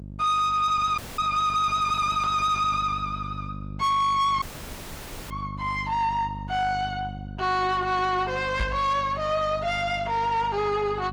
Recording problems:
lossy codec; Opus, log-spectral distance 2 dB
distorted audio; soft clipping, signal-to-distortion ratio 12 dB
hum; 50 Hz, harmonics up to 600 Hz, SNR 14 dB
audio cutting out; at 1 s and at 4.5 s for 1 s
microphone thump; at 8.5 s; peak 0 dB vs average level

